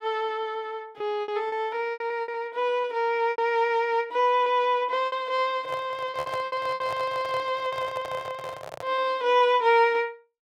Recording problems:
lost packets; 9% of the sound replaced, filled with repeated pitch periods
handling noise; from 5.5 to 9 s; peak -7 dB vs average level

